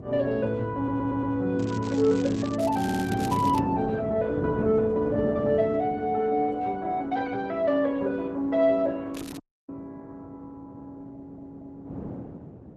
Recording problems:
codec artefacts; Opus, log-spectral distance 2 dB
wind noise; below 370 Hz, SNR 11 dB
stutter; at 1 s, at 3 s and at 11 s
crackle; from 1.5 to 3.5 s and at 9 s; loose cable, SNR 18 dB
dropout; at 9.5 s

